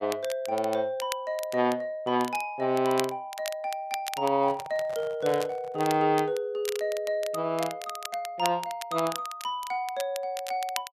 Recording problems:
crackling; vinyl, SNR 12 dB
microphone handling noise; from 4.5 to 6 s; peak -10 dB vs average level

